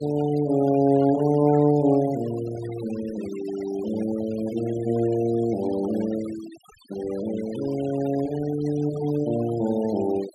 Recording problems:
denoising artefacts; signal-to-artefact ratio 18 dB

